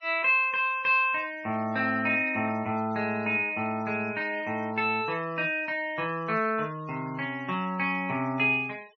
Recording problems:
denoising artefacts; signal-to-artefact ratio 27 dB

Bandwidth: 6 kHz